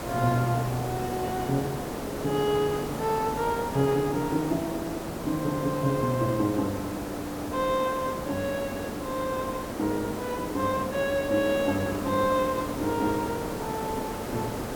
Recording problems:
hiss; slope -7 dB per octave, SNR 5 dB

